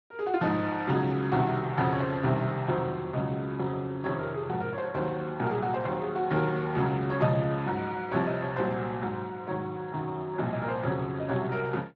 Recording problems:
codec artefacts; Speex, log-spectral distance 3 dB

